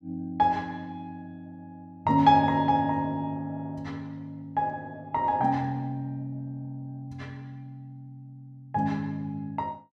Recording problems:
none

